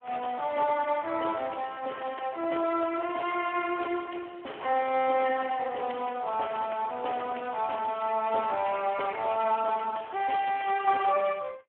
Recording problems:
phone line; 300 Hz to 3.2 kHz, Speex

